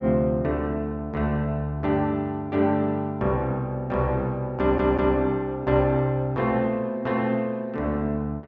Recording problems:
treble missing; nothing above 8 kHz
stutter; at 4.5 s

